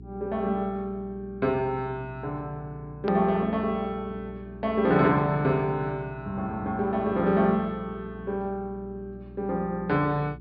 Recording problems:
treble missing; nothing above 5.5 kHz
hum; 60 Hz, harmonics up to 420 Hz, SNR 18 dB
hard cut with a click; at 3 s

